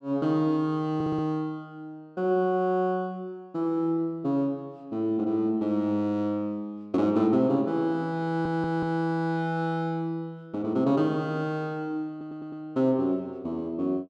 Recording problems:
stutter; at 1 s, at 8.5 s and at 12 s

